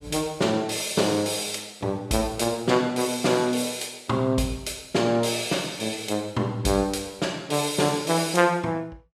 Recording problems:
none

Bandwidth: 14.5 kHz